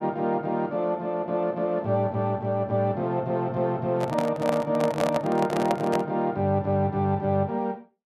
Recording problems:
microphone handling noise; from 4 to 6 s; peak +2 dB vs average level

